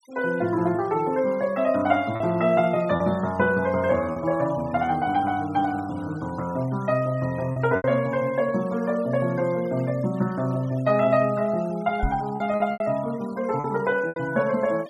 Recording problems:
noise reduction artefacts; signal-to-artefact ratio 22 dB
packet loss; 4% of the sound replaced, filled with repeated pitch periods
microphone thump; at 12 s; peak +1 dB vs average level

